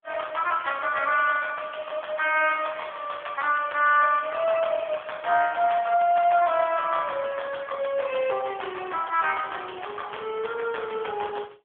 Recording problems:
phone line; 340 Hz to 3.4 kHz, AMR-NB

